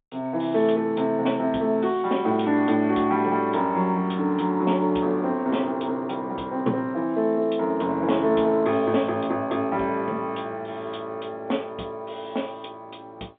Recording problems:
phone line; 190 Hz to 3.6 kHz, G.711

